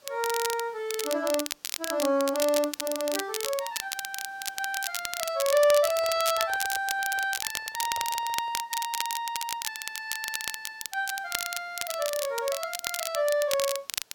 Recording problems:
background hiss; SNR 29 dB
crackling; vinyl, SNR 4 dB
handling noise; from 5.5 to 8.5 s; peak -12 dB vs average level

